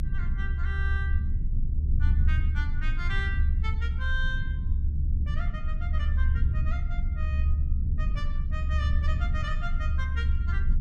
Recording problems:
rumble; below 72 Hz, strongest tone 24 Hz, SNR -10 dB

